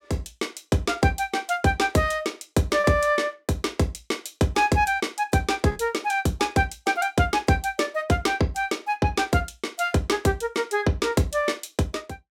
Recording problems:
lost packets; 1.2% of the sound replaced, filled with repeated pitch periods

